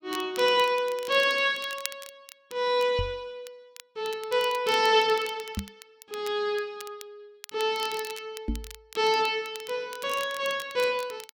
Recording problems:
crackling; vinyl, SNR 17 dB
microphone bump; at 3 s, at 5.5 s and at 8.5 s; peak 0 dB vs average level

